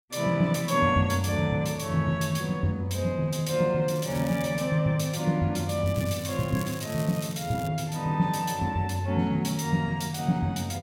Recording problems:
crackling; at 4 s and from 6 to 7.5 s; loose cable, SNR 16 dB

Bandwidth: 16.5 kHz